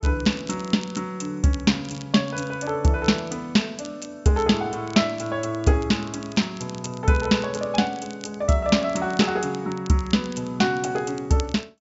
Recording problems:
treble missing; nothing above 8 kHz
crackle; vinyl, SNR 21 dB

